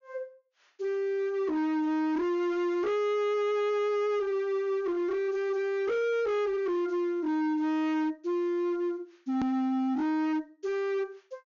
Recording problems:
low-pass filter; nothing above 6.9 kHz
distortion; hard clipping, signal-to-distortion ratio 7 dB
hard cut with a click; at 9.5 s

